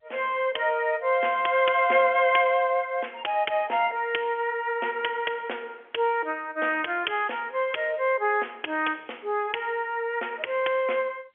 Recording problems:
phone line; 320 Hz to 3.4 kHz, G.711

